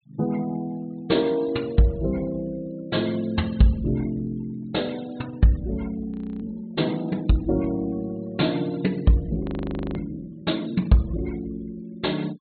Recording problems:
low-pass filter; nothing above 4.3 kHz
denoising artefacts; signal-to-artefact ratio 24 dB
frozen audio; at 6 s and at 9.5 s for 0.5 s

